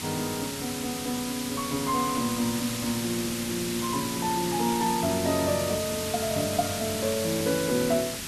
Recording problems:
hiss; SNR 4 dB

